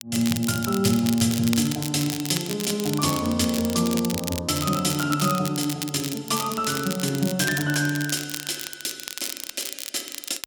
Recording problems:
crackle; vinyl, SNR 7 dB

